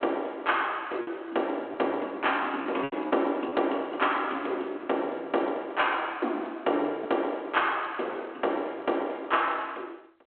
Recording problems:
telephone audio; 260 Hz to 3.7 kHz, G.726
lost packets; 2% of the sound replaced, filled with repeated pitch periods

